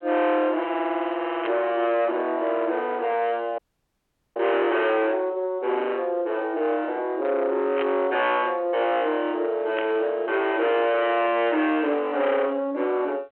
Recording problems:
telephone audio; 280 Hz to 3.3 kHz, G.726
distortion; soft clipping, signal-to-distortion ratio 8 dB
static burst; at 1.5 s, at 8 s and at 10 s; peak -5 dB vs average level
audio cutting out; at 3.5 s for 1 s

